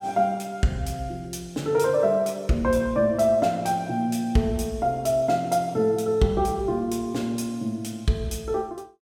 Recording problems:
none

